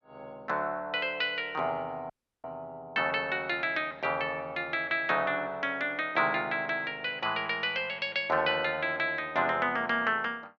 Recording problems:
audio cutting out; at 2 s

